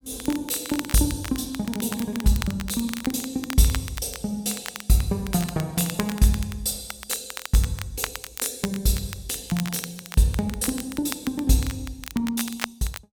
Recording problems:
crackle; vinyl, SNR 11 dB

